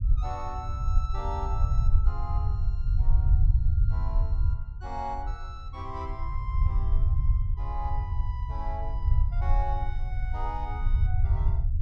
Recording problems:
rumble; below 78 Hz, SNR -10 dB

